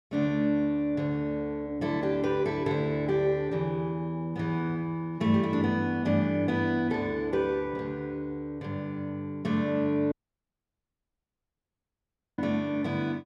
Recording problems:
audio cutting out; at 10 s for 2.5 s

